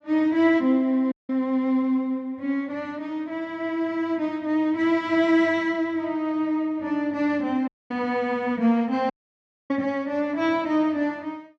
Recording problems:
dropout; at 1 s, at 7.5 s and at 9 s for 0.5 s

